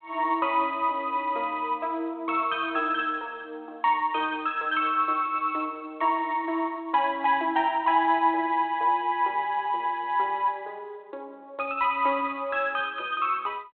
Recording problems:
telephone audio; 280 Hz to 3.3 kHz, G.726

